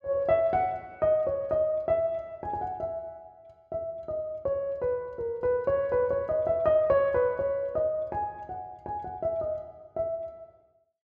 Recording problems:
none

